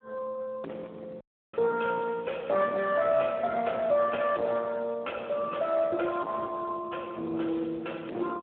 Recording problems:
telephone audio; 280 Hz to 2.5 kHz, Speex
distorted audio; soft clipping, signal-to-distortion ratio 11 dB
audio cutting out; at 1 s

